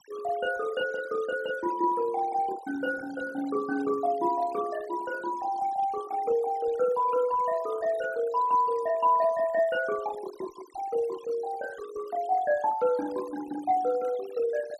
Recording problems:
noise reduction artefacts; signal-to-artefact ratio 17 dB

